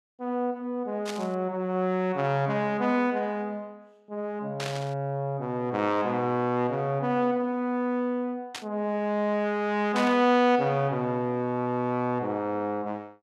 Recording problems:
static burst; 4 times, first at 1 s; peak -3 dB vs average level

